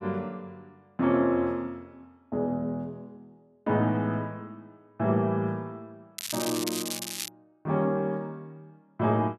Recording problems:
crackling; from 6 to 7.5 s; loose cable, SNR 5 dB

